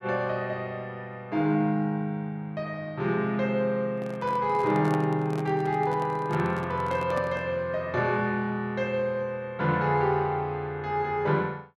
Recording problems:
microphone handling noise; from 4 to 7.5 s; peak -5 dB vs average level

